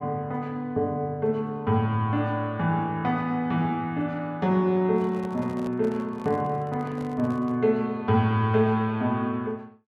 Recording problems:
microphone handling noise; from 5 to 7.5 s; peak -11 dB vs average level

